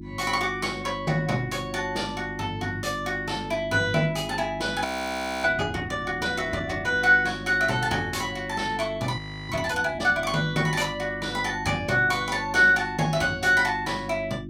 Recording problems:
hum; 50 Hz, harmonics up to 350 Hz, SNR 13 dB
frozen audio; at 5 s for 0.5 s and at 9 s

